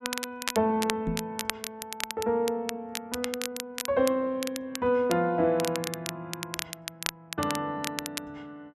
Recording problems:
crackle; vinyl, SNR 6 dB
knock on the microphone; at 1 s; peak +2 dB vs average level

